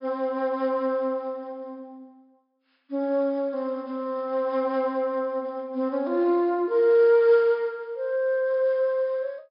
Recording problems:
low-pass filter; nothing above 5.5 kHz

